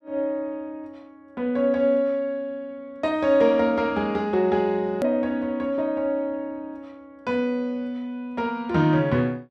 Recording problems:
edit click; at 5 s

